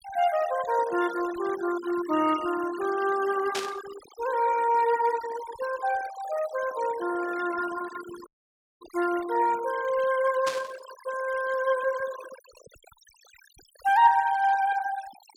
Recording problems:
denoising artefacts; signal-to-artefact ratio 16 dB
static burst; at 3.5 s and at 10 s; peak -1 dB vs average level
dropout; at 8.5 s for 0.5 s

